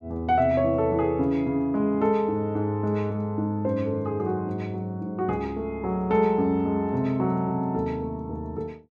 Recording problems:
none

